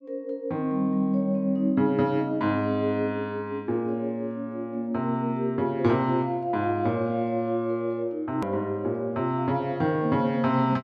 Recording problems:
click at an edit; at 8.5 s

